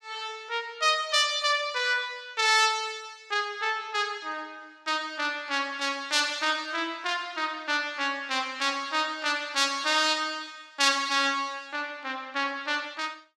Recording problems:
none

